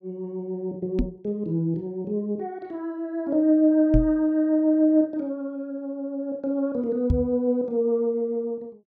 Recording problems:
microphone thump; at 1 s, at 4 s and at 7 s; peak +5 dB vs average level

